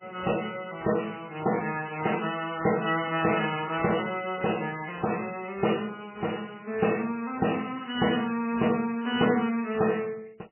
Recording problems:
lossy codec; MP3, log-spectral distance 13 dB, nothing above 2.7 kHz

